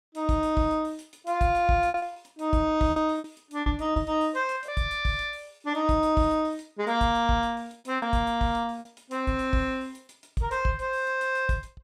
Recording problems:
packet loss; 5% of the sound replaced, filled with repeated pitch periods

